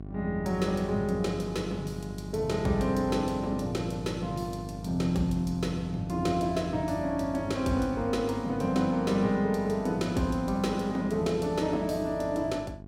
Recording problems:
electrical hum; 50 Hz, harmonics up to 800 Hz, SNR 13 dB

